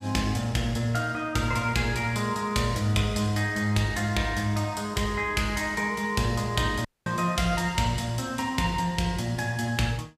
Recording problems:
audio cutting out; at 7 s

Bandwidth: 15.5 kHz